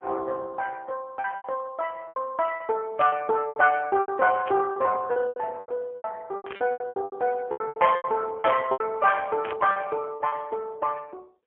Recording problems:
phone line; 130 Hz to 2.1 kHz, AMR-NB, then MP3
packet loss; 15% of the sound replaced, filled with repeated pitch periods
burst of static; 4 times, first at 3 s; peak -7 dB vs average level

